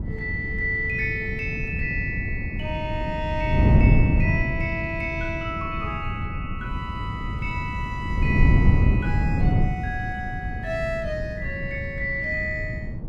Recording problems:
wind on the microphone; below 160 Hz, SNR -3 dB

